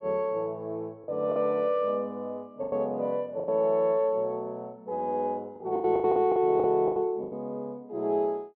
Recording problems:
packet loss; 9% of the sound replaced, filled with the last packet

